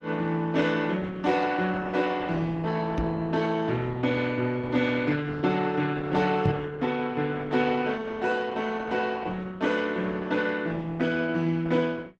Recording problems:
lossy codec; Opus, log-spectral distance 4 dB
knock on the microphone; at 3 s and at 6.5 s; peak +5 dB vs average level

